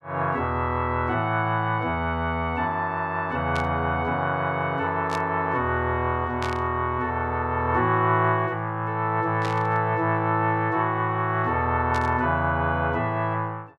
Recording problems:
burst of static; 5 times, first at 3.5 s; peak -6 dB vs average level

